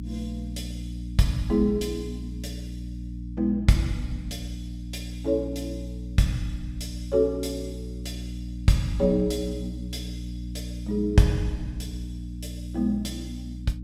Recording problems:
hum; 60 Hz, harmonics up to 300 Hz, SNR 8 dB

